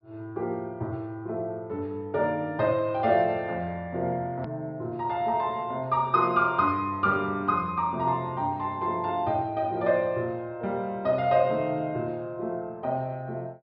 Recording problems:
treble cut off; nothing above 5.5 kHz
hard cut with a click; at 4.5 s

